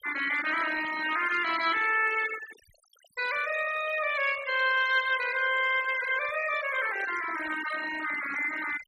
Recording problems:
denoising artefacts; signal-to-artefact ratio 12 dB

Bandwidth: 15.5 kHz